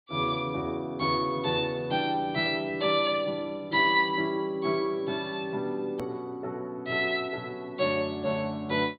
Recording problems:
treble missing; nothing above 4.6 kHz
click at an edit; at 6 s

